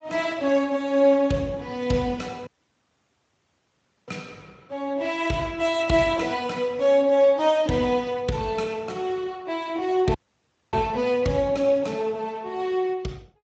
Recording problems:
lossy compression; Speex, log-spectral distance 3 dB, nothing above 7.3 kHz
audio cutting out; at 2.5 s for 1.5 s and at 10 s for 0.5 s

